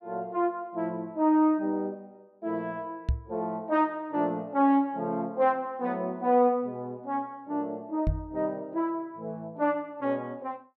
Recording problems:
knock on the microphone; at 3 s and at 8 s; peak +5 dB vs average level

